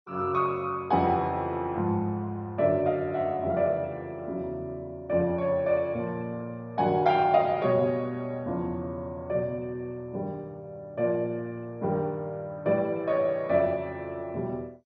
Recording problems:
lossy compression; MP2, log-spectral distance 2 dB, nothing above 5.2 kHz

